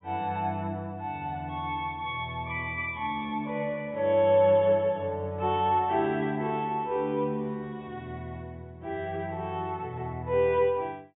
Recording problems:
treble cut off; nothing above 4 kHz

